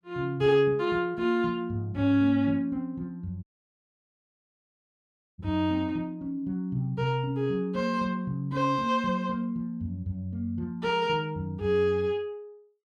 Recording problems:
audio cutting out; at 3.5 s for 2 s

